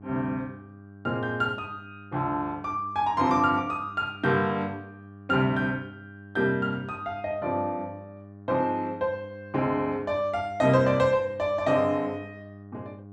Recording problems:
hum; 50 Hz, harmonics up to 1.1 kHz, SNR 19 dB

